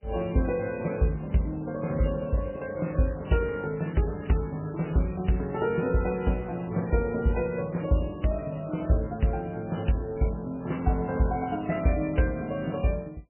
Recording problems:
codec artefacts; MP3, log-spectral distance 5 dB, nothing above 2.7 kHz
crackle; from 2.5 to 5.5 s; loose cable, SNR 24 dB

